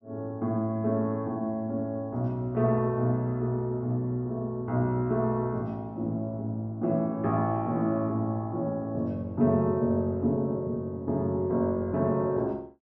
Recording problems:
none

